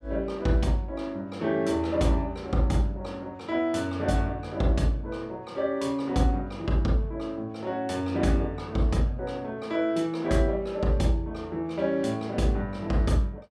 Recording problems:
none

